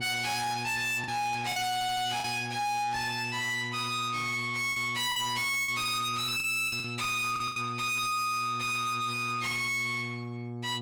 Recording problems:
distorted audio; soft clipping, signal-to-distortion ratio 7 dB
mains hum; 60 Hz, harmonics up to 840 Hz, SNR 11 dB
packet loss; 5% of the sound replaced, filled with the last packet
stutter; at 1.5 s

